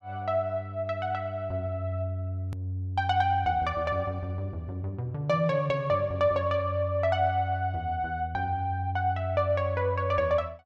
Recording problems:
hard cut with a click; at 2.5 s

